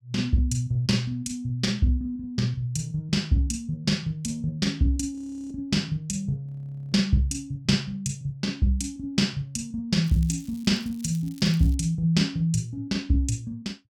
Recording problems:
frozen audio; at 5 s and at 6.5 s
crackling; from 10 to 12 s; loose cable, SNR 24 dB

